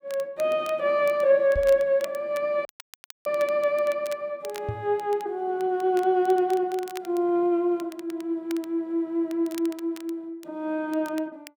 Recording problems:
crackling; vinyl, SNR 22 dB
microphone bump; at 1.5 s and at 4.5 s; peak -3 dB vs average level
audio cutting out; at 2.5 s for 0.5 s

